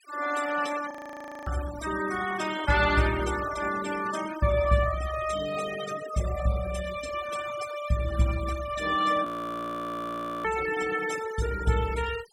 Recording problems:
noise reduction artefacts; signal-to-artefact ratio 12 dB
frozen audio; at 1 s for 0.5 s and at 9.5 s for 1 s

